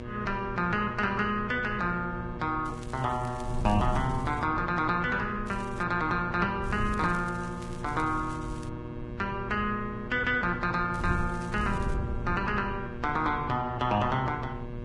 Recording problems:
lossy compression; Vorbis, log-spectral distance 2 dB
mains hum; 60 Hz, harmonics up to 2.3 kHz, SNR 11 dB
wind noise; below 130 Hz, SNR 11 dB
crackle; 4 times, first at 2.5 s; loose cable, SNR 23 dB

